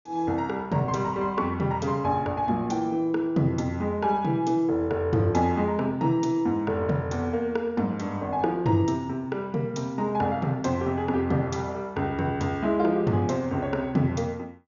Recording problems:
treble cut off; nothing above 6.9 kHz

